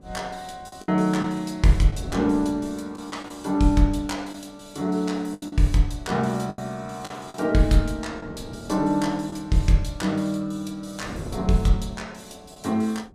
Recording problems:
wind on the microphone; below 350 Hz, SNR 17 dB
packet loss; 4% of the sound replaced, filled with the last packet

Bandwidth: 14.5 kHz